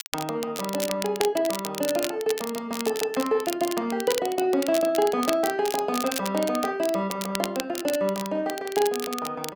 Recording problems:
crackle; vinyl, SNR 8 dB

